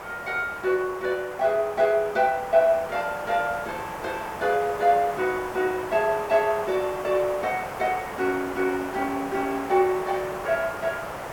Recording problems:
background hiss; SNR 10 dB

